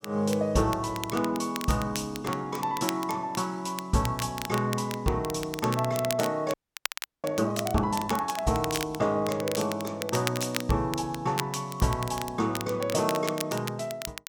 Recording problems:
crackling; vinyl, SNR 9 dB
audio freezing; at 6.5 s for 0.5 s

